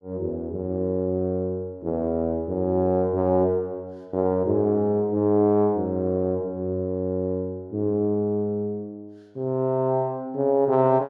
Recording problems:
none

